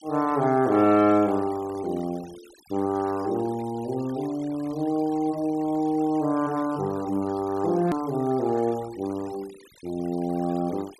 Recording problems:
noise reduction artefacts; signal-to-artefact ratio 22 dB
edit click; at 8 s

